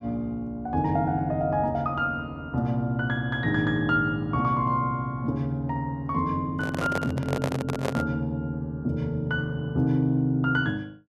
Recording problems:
handling noise; from 6.5 to 8 s; peak +1 dB vs average level

